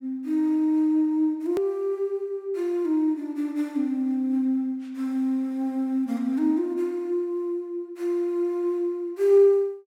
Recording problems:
click at an edit; at 1.5 s

